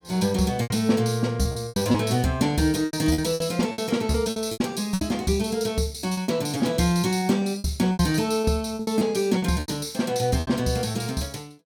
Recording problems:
packet loss; 13% of the sound replaced, filled with repeated pitch periods

